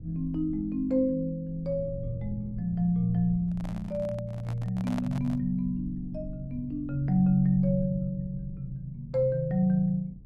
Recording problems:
low-frequency rumble; below 120 Hz, SNR 15 dB
handling noise; from 3.5 to 5.5 s; peak -5 dB vs average level

